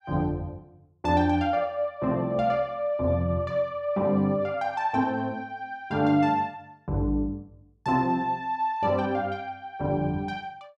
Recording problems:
none

